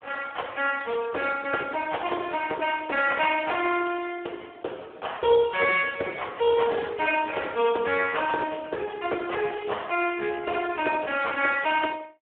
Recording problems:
phone line; 320 Hz to 3.3 kHz, Speex

